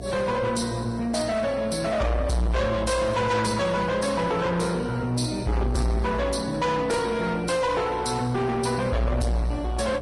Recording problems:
lossy codec; Vorbis, then Vorbis, log-spectral distance 4 dB, nothing above 10.4 kHz
distorted audio; soft clipping, signal-to-distortion ratio 7 dB
hum; 60 Hz, harmonics up to 720 Hz, SNR 13 dB

